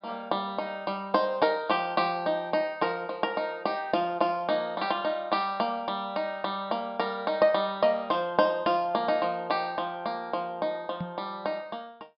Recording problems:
low-pass filter; nothing above 5.5 kHz
microphone thump; at 11 s; peak -3 dB vs average level

